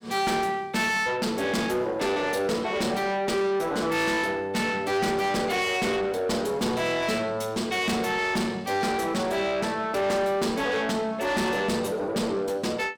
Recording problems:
distorted audio; soft clipping, signal-to-distortion ratio 8 dB

